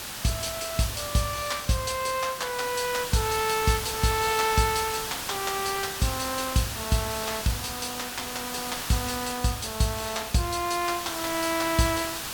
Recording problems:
hiss; slope 0 dB per octave, SNR 5 dB

